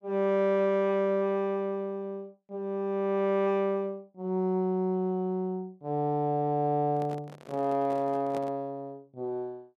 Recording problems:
handling noise; from 7 to 8.5 s; peak -8 dB vs average level

